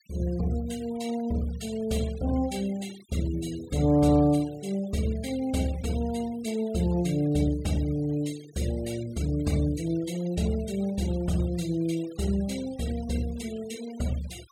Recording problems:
noise reduction artefacts; signal-to-artefact ratio 18 dB

